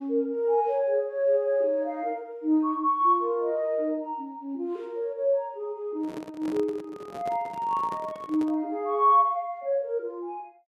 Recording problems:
microphone handling noise; from 6 to 8.5 s; peak -9 dB vs average level

